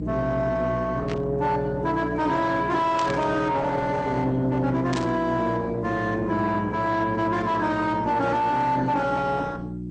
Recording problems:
codec artefacts; MP2, then Opus, log-spectral distance 2 dB
distorted audio; soft clipping, signal-to-distortion ratio 7 dB
hum; 60 Hz, harmonics up to 480 Hz, SNR 9 dB
burst of static; at 1 s, at 3 s and at 5 s; peak -5 dB vs average level

